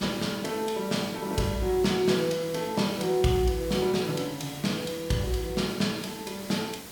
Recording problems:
background hiss; slope -3 dB per octave, SNR 15 dB

